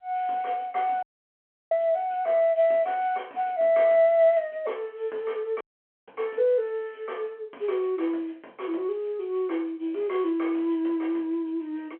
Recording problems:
phone line; 280 Hz to 3.6 kHz, G.711
dropout; at 1 s for 0.5 s and at 5.5 s

